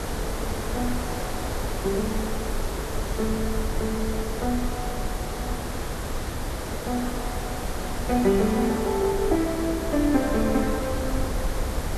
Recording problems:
hiss; slope -6 dB per octave, SNR 5 dB
rumble; below 72 Hz, SNR 8 dB

